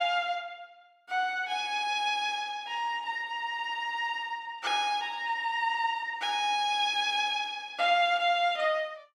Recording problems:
none

